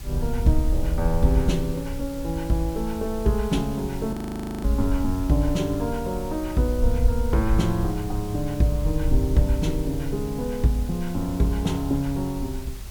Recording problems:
background hiss; slope -1 dB per octave, SNR 18 dB
wind on the microphone; below 66 Hz, SNR 5 dB
audio freezing; at 4 s for 0.5 s

